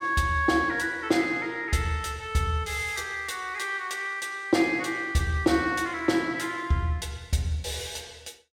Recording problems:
none

